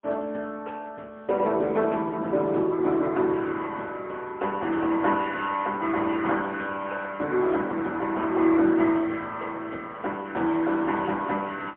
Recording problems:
telephone audio; 240 Hz to 3.8 kHz, AMR-NB, then MP3

